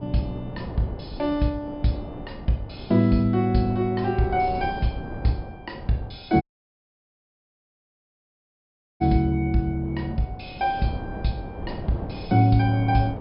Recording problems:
treble missing; nothing above 5.5 kHz
wind on the microphone; below 470 Hz, SNR 13 dB
audio cutting out; at 6.5 s for 2.5 s

